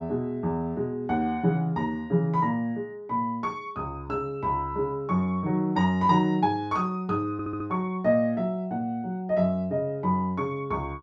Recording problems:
audio stuttering; at 7.5 s

